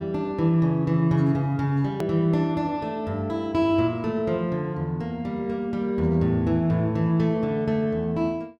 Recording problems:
hard cut with a click; at 2 s

